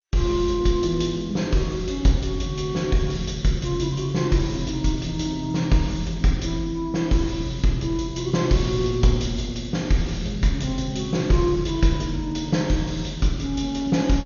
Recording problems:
lossy codec; MP2, log-spectral distance 4 dB, nothing above 6.7 kHz

